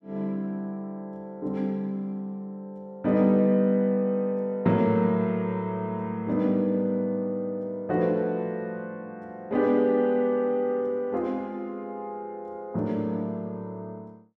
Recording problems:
none

